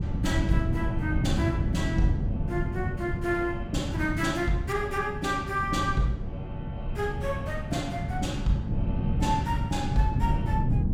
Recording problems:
wind noise; below 170 Hz, SNR 1 dB

